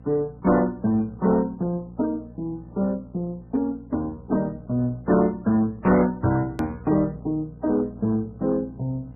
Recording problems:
codec artefacts; MP3, then Vorbis, log-spectral distance 2 dB, nothing above 13.1 kHz
distortion; hard clipping, uneven, signal-to-distortion ratio 11 dB
hum; 60 Hz, harmonics up to 780 Hz, SNR 19 dB
edit click; at 6.5 s

